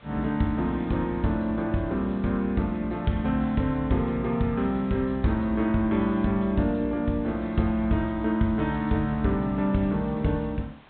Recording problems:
treble missing; nothing above 4 kHz
hiss; SNR 28 dB

